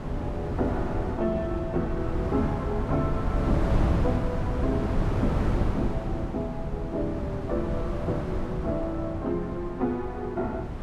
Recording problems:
wind noise; below 240 Hz, SNR -1 dB

